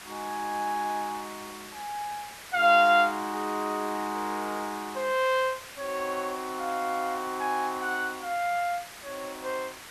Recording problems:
hiss; SNR 14 dB

